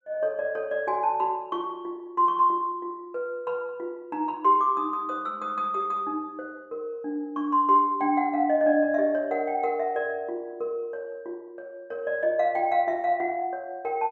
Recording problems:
none

